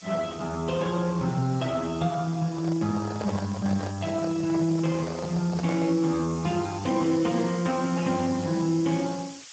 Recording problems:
lossy codec; Speex, log-spectral distance 13 dB
hiss; slope +4 dB per octave, SNR 18 dB
microphone handling noise; from 2.5 to 6 s; peak -3 dB vs average level

